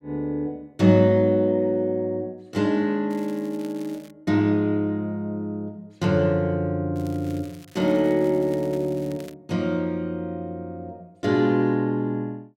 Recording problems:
crackle; from 3 to 4 s and from 7 to 9.5 s; loose cable, SNR 26 dB

